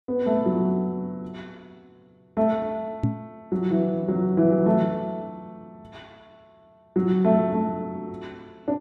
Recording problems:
knock on the microphone; at 3 s; peak +4 dB vs average level

